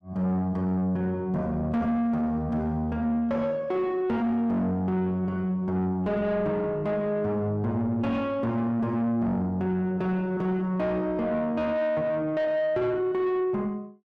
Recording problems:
distorted audio; soft clipping, signal-to-distortion ratio 10 dB

